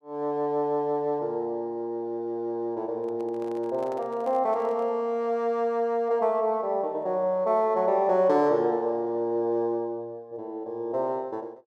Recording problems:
handling noise; from 3 to 5 s; peak -12 dB vs average level

